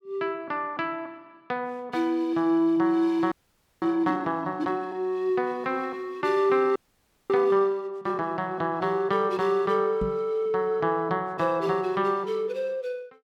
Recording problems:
audio freezing; at 3.5 s for 0.5 s and at 7 s for 0.5 s
microphone thump; at 10 s; peak -2 dB vs average level

